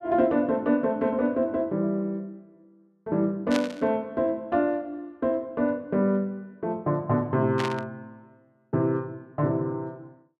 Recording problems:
burst of static; at 3.5 s and at 7.5 s; peak -1 dB vs average level

